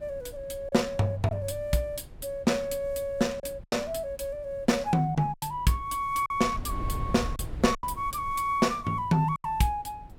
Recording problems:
wind on the microphone; below 120 Hz, SNR 14 dB
packet loss; 5% of the sound replaced, filled with silence

